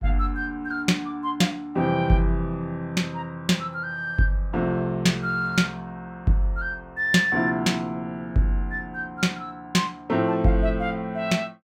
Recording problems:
none

